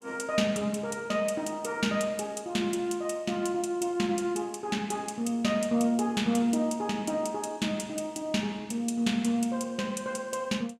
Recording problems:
none

